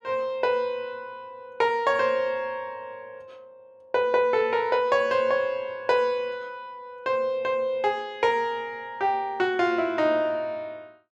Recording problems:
none

